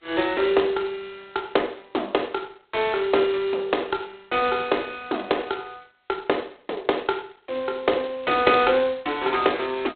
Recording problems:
telephone audio; 300 Hz to 3.7 kHz, G.726

